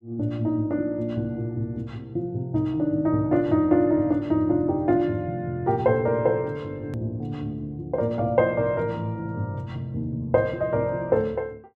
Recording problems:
edit click; at 7 s

